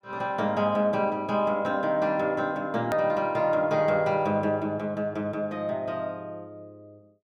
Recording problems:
hard cut with a click; at 3 s

